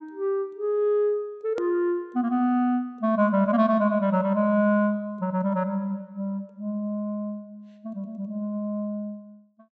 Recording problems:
low-pass filter; nothing above 8 kHz
hard cut with a click; at 1.5 s

